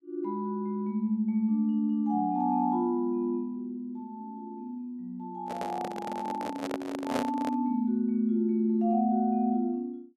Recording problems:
microphone handling noise; from 5.5 to 7.5 s; peak +2 dB vs average level

